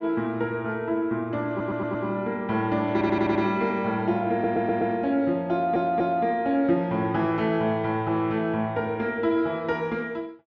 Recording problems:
treble cut off; nothing above 7 kHz
stutter; 4 times, first at 1.5 s

